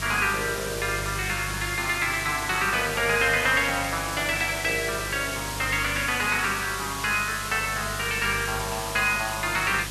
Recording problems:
hum; 50 Hz, harmonics up to 500 Hz, SNR 14 dB
hiss; slope 0 dB per octave, SNR 7 dB

